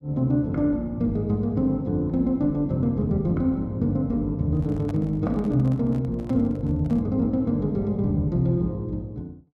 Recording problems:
microphone handling noise; from 4.5 to 7 s; peak -12 dB vs average level

